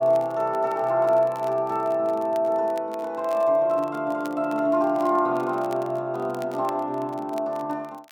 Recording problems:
crackling; vinyl, SNR 27 dB

